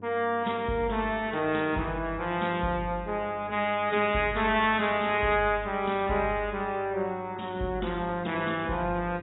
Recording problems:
lossy codec; AAC, log-spectral distance 3 dB, nothing above 3.8 kHz
hum; 50 Hz, harmonics up to 600 Hz, SNR 20 dB

